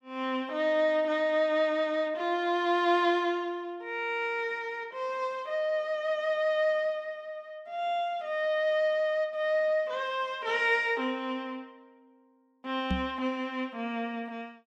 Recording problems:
knock on the microphone; at 13 s; peak +2 dB vs average level

